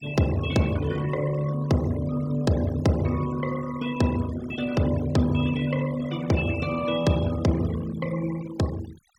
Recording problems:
denoising artefacts; signal-to-artefact ratio 16 dB

